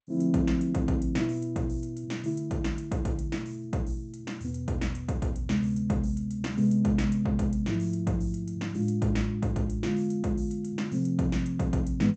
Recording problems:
lossy compression; G.722, log-spectral distance 3 dB, nothing above 7.8 kHz

